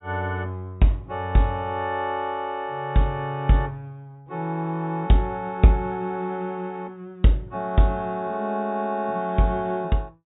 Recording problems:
treble missing; nothing above 4 kHz

